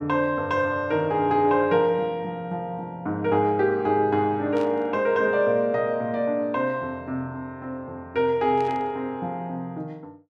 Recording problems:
burst of static; at 4.5 s and at 8.5 s; peak -14 dB vs average level

